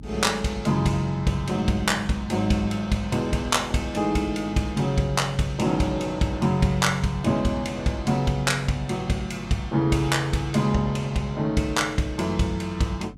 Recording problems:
hum; 50 Hz, harmonics up to 300 Hz, SNR 18 dB

